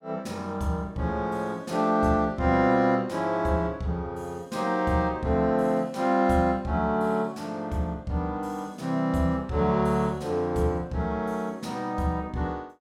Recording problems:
none

